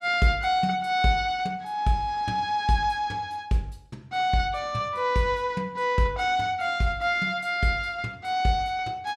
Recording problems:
none

